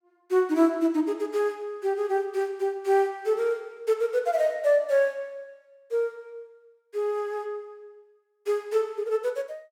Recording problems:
none

